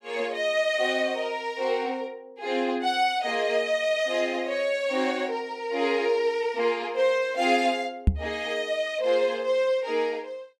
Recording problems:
knock on the microphone; at 8 s; peak +8 dB vs average level

